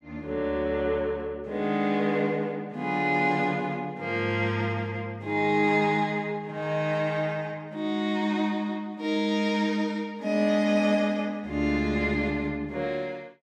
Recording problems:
none

